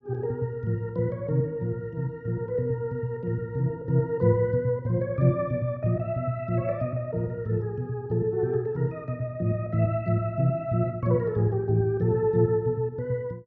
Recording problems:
low-pass filter; nothing above 8 kHz

